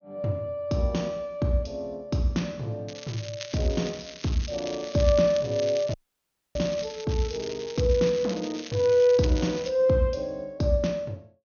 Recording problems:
low-pass filter; nothing above 6.6 kHz
crackling; from 3 to 7 s and from 7 to 9.5 s; loose cable, SNR 14 dB
dropout; at 6 s for 0.5 s

